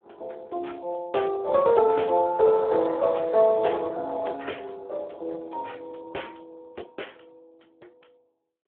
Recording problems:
phone line; 320 Hz to 3.6 kHz, Speex

